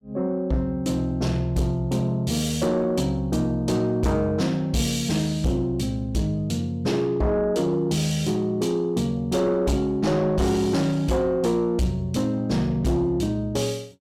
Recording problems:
distorted audio; soft clipping, signal-to-distortion ratio 11 dB

